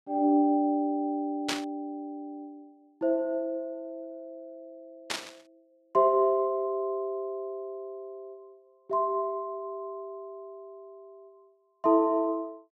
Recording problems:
burst of static; at 1.5 s and at 5 s; peak +3 dB vs average level

